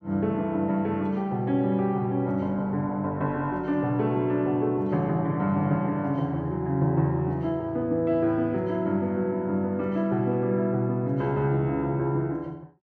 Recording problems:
none

